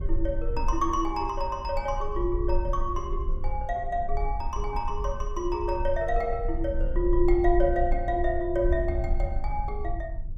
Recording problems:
rumble; below 52 Hz, SNR 4 dB

